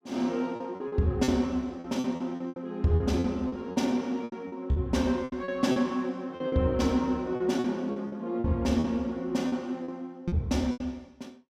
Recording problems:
packet loss; 13% of the sound replaced, filled with repeated pitch periods

